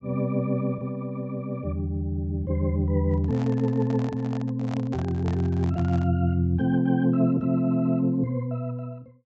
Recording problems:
treble missing; nothing above 8 kHz
microphone handling noise; from 3 to 6 s; peak -8 dB vs average level

